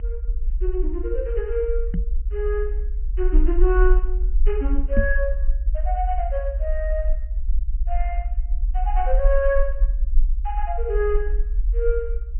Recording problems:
treble missing; nothing above 3.1 kHz
low-frequency rumble; below 44 Hz, SNR -2 dB
knock on the microphone; at 2 s and at 5 s; peak +7 dB vs average level

